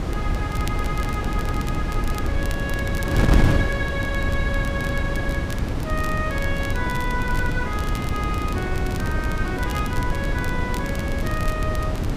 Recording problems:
wind noise; below 230 Hz, SNR -4 dB
crackling; vinyl, SNR 12 dB

